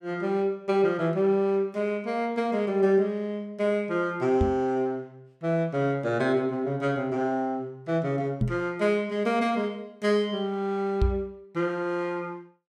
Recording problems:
microphone thump; at 4.5 s, at 8.5 s and at 11 s; peak +5 dB vs average level

